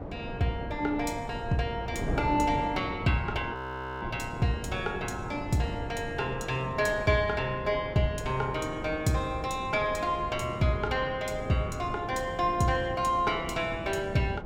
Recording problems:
wind noise; below 450 Hz, SNR 9 dB
audio freezing; at 3.5 s

